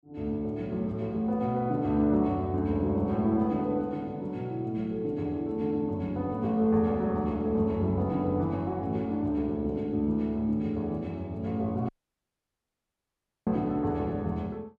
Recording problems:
audio cutting out; at 12 s for 1.5 s

